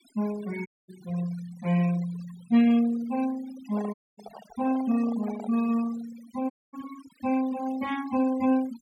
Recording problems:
denoising artefacts; signal-to-artefact ratio 17 dB
audio cutting out; at 0.5 s, at 4 s and at 6.5 s
handling noise; from 3.5 to 5.5 s; peak -11 dB vs average level

